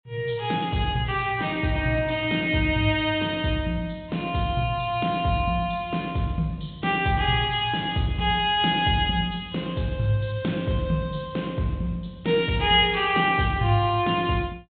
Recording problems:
treble missing; nothing above 4 kHz

